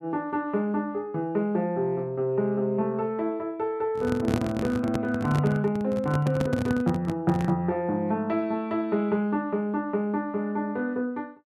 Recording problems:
microphone handling noise; from 4 to 7.5 s; peak +3 dB vs average level

